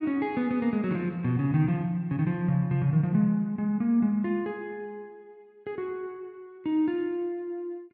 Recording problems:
none

